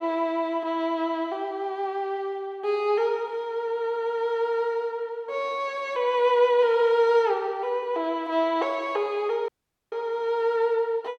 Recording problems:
dropout; at 9.5 s

